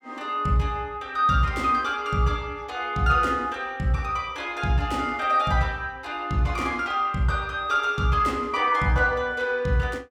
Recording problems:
none

